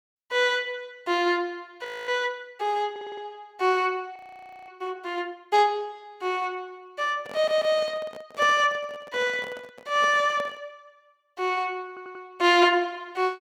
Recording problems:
frozen audio; at 2 s and at 4 s for 0.5 s
stutter; at 3 s, at 7.5 s and at 12 s
microphone handling noise; from 7 to 11 s; peak -6 dB vs average level

